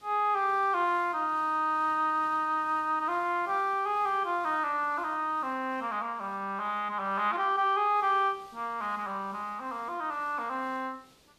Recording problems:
background hiss; SNR 28 dB

